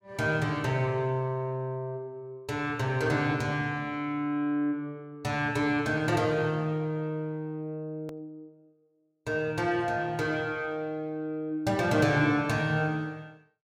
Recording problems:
hard cut with a click; at 8 s

